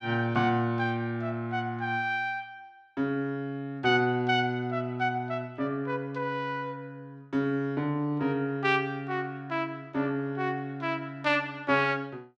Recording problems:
none

